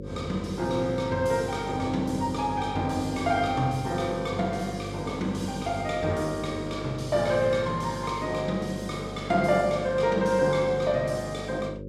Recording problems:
hum; 50 Hz, harmonics up to 550 Hz, SNR 10 dB

